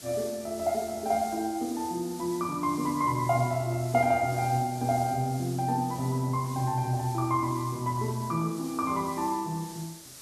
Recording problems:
background hiss; SNR 15 dB

